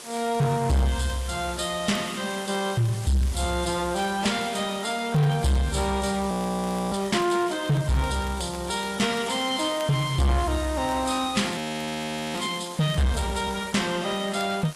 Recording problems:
lossy compression; AAC, log-spectral distance 8 dB, nothing above 11.3 kHz
distortion; soft clipping, signal-to-distortion ratio 7 dB
background hiss; slope -2 dB per octave, SNR 15 dB
crackle; vinyl, SNR 24 dB
audio freezing; at 6.5 s for 0.5 s and at 12 s for 1 s

